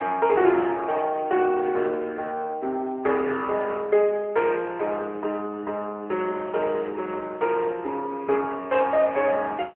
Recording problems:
telephone audio; 280 Hz to 3.2 kHz, AMR-NB

